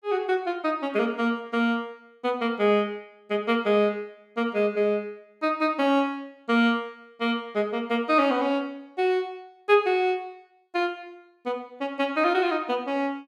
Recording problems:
none

